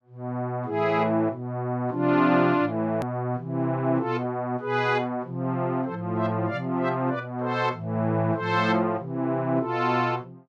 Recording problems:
edit click; at 3 s

